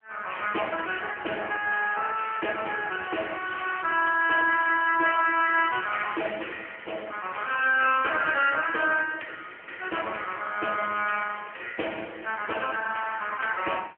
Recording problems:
telephone audio; 240 Hz to 3 kHz, AMR-NB

